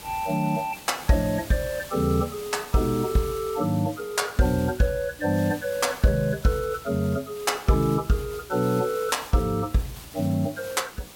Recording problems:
hiss; slope -2 dB per octave, SNR 16 dB

